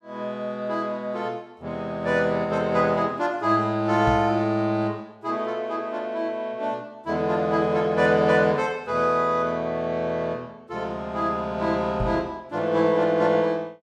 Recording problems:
knock on the microphone; at 4 s and at 12 s; peak -1 dB vs average level

